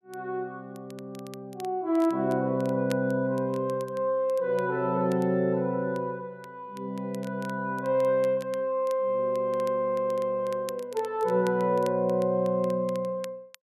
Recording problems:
crackle; vinyl, SNR 24 dB

